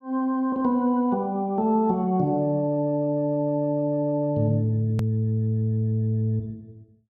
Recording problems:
click at an edit; at 5 s

